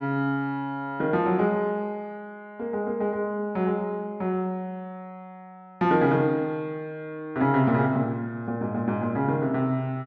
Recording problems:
none

